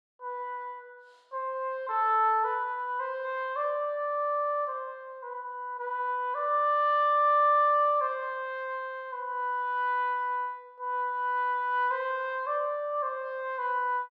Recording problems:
none

